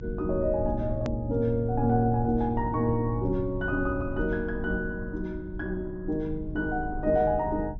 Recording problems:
low-pass filter; nothing above 7.3 kHz
hum; 50 Hz, harmonics up to 300 Hz, SNR 19 dB
rumble; below 90 Hz, SNR 10 dB
edit click; at 1 s

